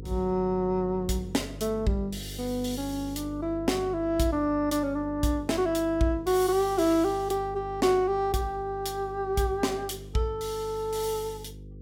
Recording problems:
hum; 50 Hz, harmonics up to 500 Hz, SNR 14 dB

